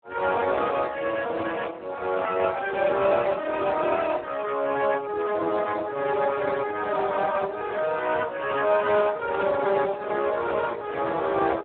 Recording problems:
telephone audio; 300 Hz to 2 kHz, Speex

